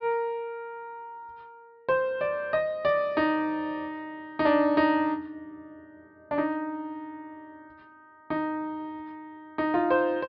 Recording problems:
treble cut off; nothing above 5.5 kHz

